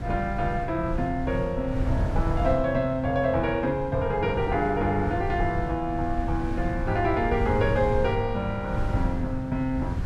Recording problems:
wind on the microphone; below 120 Hz, SNR 6 dB

